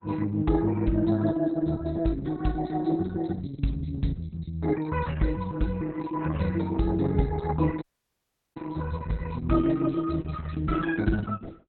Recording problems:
codec artefacts; Opus, log-spectral distance 3 dB, nothing above 4.1 kHz
dropout; at 8 s for 0.5 s

